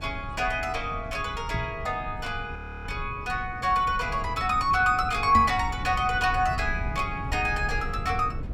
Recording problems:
low-frequency rumble; below 120 Hz, SNR 10 dB
microphone thump; at 1.5 s and at 5.5 s; peak +1 dB vs average level
audio freezing; at 2.5 s

